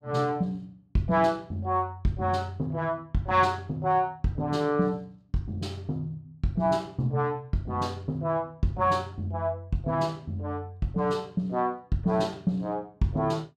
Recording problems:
none

